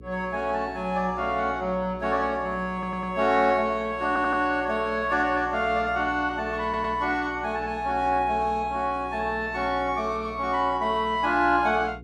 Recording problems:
hum; 60 Hz, harmonics up to 480 Hz, SNR 19 dB
audio stuttering; at 2.5 s, at 4 s and at 6.5 s

